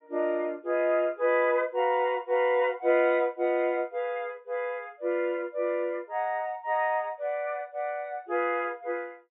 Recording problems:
treble missing; nothing above 3.7 kHz

